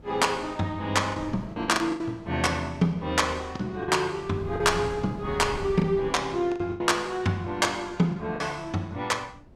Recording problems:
wind noise; below 250 Hz, SNR 17 dB
packet loss; 7% of the sound replaced, filled with the last packet

